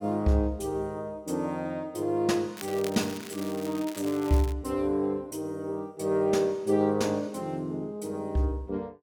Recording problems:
crackle; from 2.5 to 4.5 s; loose cable, SNR 15 dB

